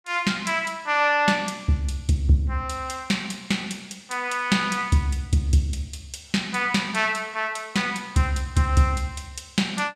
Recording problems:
none

